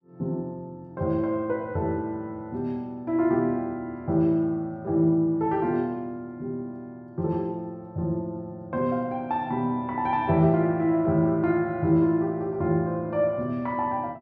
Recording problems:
none

